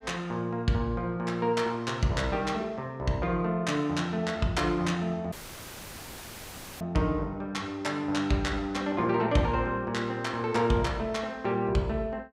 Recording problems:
dropout; at 5.5 s for 1.5 s; filled with static

